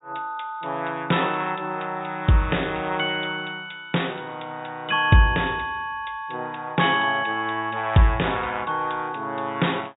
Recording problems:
low-pass filter; nothing above 4 kHz

